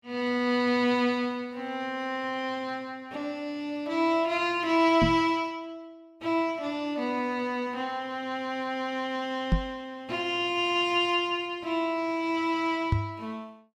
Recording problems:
microphone bump; at 5 s, at 9.5 s and at 13 s; peak +7 dB vs average level

